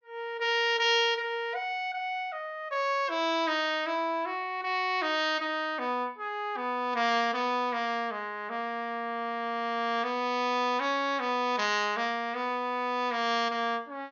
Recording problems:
low-pass filter; nothing above 6.8 kHz

